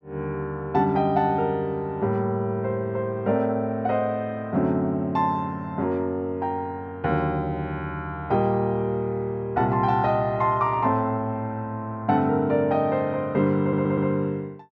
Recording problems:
audio stuttering; at 14 s

